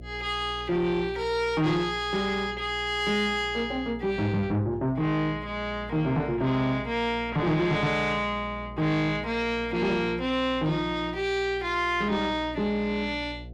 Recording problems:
distortion; soft clipping, signal-to-distortion ratio 11 dB
electrical hum; 60 Hz, harmonics up to 720 Hz, SNR 16 dB

